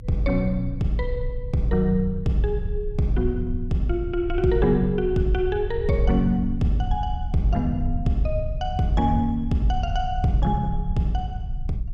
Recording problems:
rumble; below 76 Hz, strongest tone 28 Hz, SNR 7 dB

